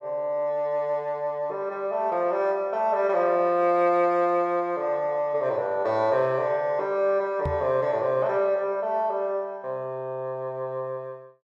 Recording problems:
knock on the microphone; at 7.5 s; peak -1 dB vs average level

